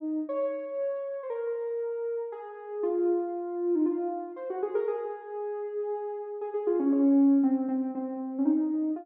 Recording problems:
none

